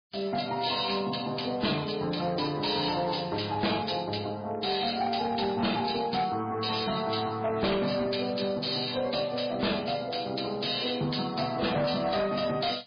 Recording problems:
codec artefacts; MP3, log-spectral distance 10 dB
distorted audio; hard clipping, signal-to-distortion ratio 11 dB

